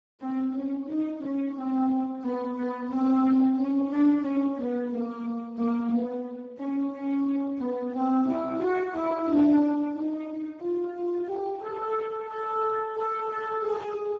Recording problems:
lossy codec; Speex, then Speex, log-spectral distance 3 dB

